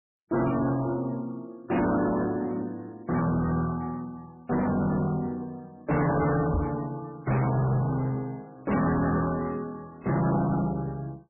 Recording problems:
lossy compression; MP3, then MP3, log-spectral distance 3 dB, nothing above 2.7 kHz
distorted audio; soft clipping, signal-to-distortion ratio 6 dB
microphone thump; at 6.5 s; peak +3 dB vs average level

